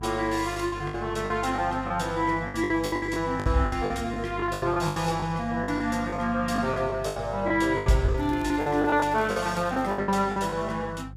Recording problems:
mains hum; 50 Hz, harmonics up to 350 Hz, SNR 14 dB
packet loss; 15% of the sound replaced, filled with the last packet
crackling; from 8 to 10 s; loose cable, SNR 26 dB

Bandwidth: 15.5 kHz